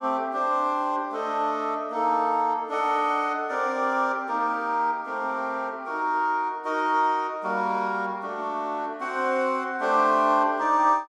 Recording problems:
none

